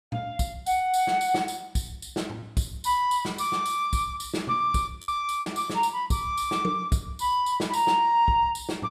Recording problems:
lost packets; 3% of the sound replaced, filled with repeated pitch periods

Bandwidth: 14.5 kHz